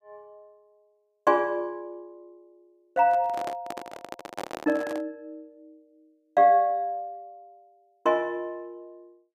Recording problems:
handling noise; from 3 to 5 s; peak -5 dB vs average level

